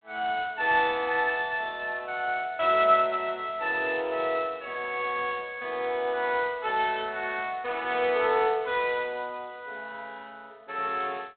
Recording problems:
phone line; 280 Hz to 3.9 kHz, G.726

